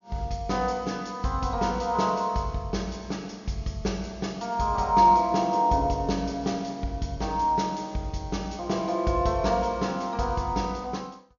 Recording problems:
treble cut off; nothing above 6.9 kHz

